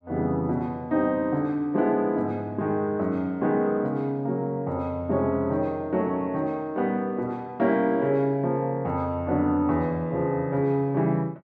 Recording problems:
none

